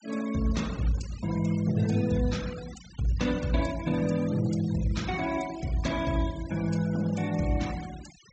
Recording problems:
treble missing; nothing above 8 kHz
noise reduction artefacts; signal-to-artefact ratio 17 dB

